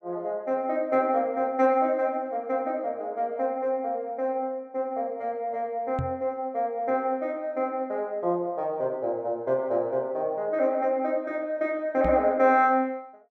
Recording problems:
knock on the microphone; at 6 s and at 12 s; peak -1 dB vs average level

